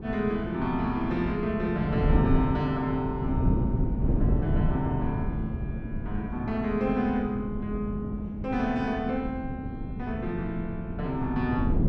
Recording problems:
wind noise; below 210 Hz, SNR 2 dB

